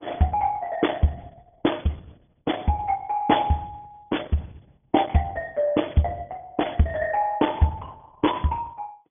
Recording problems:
treble cut off; nothing above 3.5 kHz
lossy codec; Opus, log-spectral distance 4 dB

